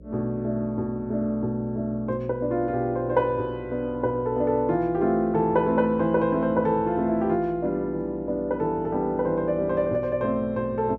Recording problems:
electrical hum; 60 Hz, harmonics up to 600 Hz, SNR 21 dB

